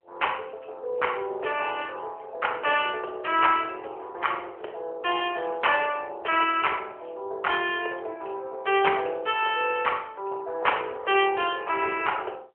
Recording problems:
phone line; 370 Hz to 3.2 kHz, AMR-NB

